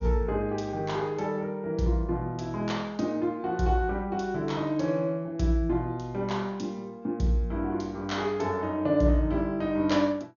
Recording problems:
treble missing; nothing above 6.8 kHz

